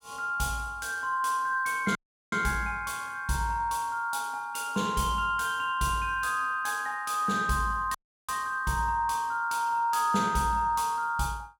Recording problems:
audio cutting out; at 2 s and at 8 s

